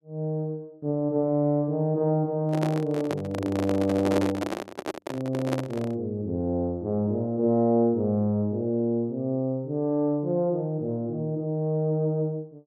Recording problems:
handling noise; from 2.5 to 6 s; peak +2 dB vs average level

